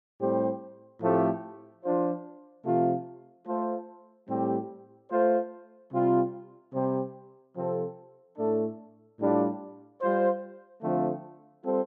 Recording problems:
none

